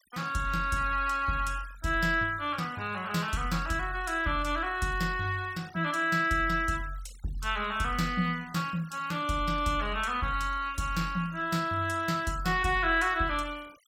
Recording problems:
noise reduction artefacts; signal-to-artefact ratio 21 dB

